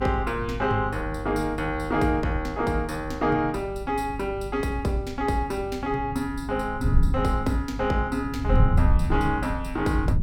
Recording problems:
hum; 50 Hz, harmonics up to 350 Hz, SNR 13 dB
wind on the microphone; below 94 Hz, SNR 3 dB

